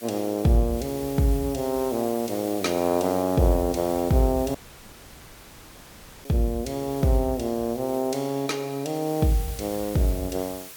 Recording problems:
hiss; slope 0 dB per octave, SNR 15 dB
dropout; at 4.5 s for 1.5 s

